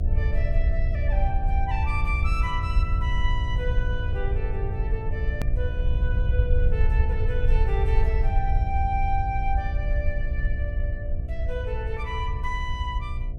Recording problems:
electrical hum; 60 Hz, harmonics up to 720 Hz, SNR 4 dB
low-frequency rumble; below 70 Hz, SNR -6 dB
hard cut with a click; at 5.5 s

